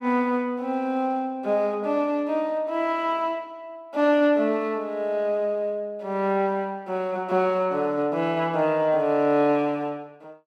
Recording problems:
none

